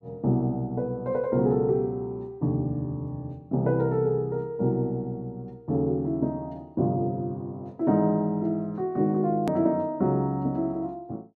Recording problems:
click at an edit; at 9.5 s

